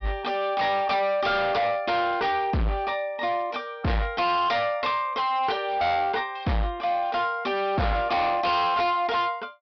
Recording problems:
treble missing; nothing above 5.5 kHz
distorted audio; hard clipping, signal-to-distortion ratio 7 dB

